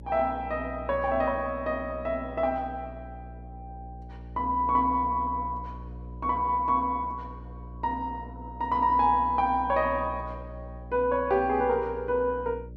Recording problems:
electrical hum; 60 Hz, harmonics up to 600 Hz, SNR 15 dB

